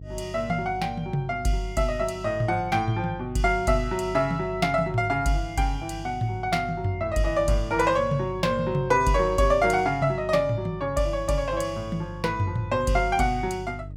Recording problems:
electrical hum; 50 Hz, harmonics up to 450 Hz, SNR 14 dB

